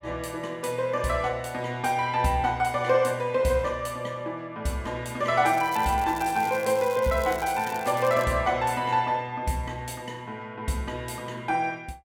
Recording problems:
crackle; from 5.5 to 8 s; loose cable, SNR 17 dB

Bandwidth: 17 kHz